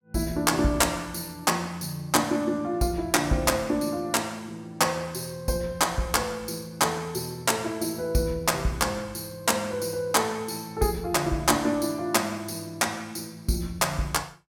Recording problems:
none

